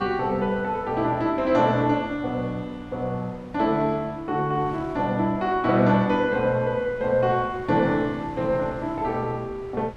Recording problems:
wind on the microphone; below 660 Hz, SNR 20 dB

